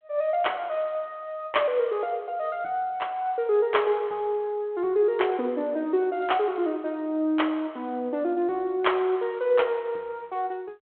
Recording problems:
phone line; 260 Hz to 3.4 kHz, G.726

